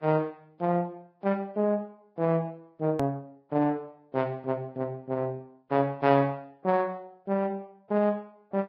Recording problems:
codec artefacts; Vorbis, log-spectral distance 2 dB, nothing above 13.1 kHz
edit click; at 3 s

